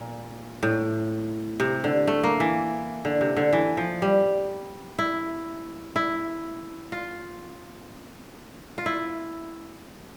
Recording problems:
hiss; slope -5 dB per octave, SNR 19 dB

